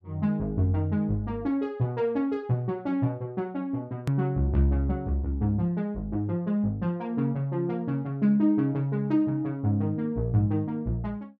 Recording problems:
click at an edit; at 4 s

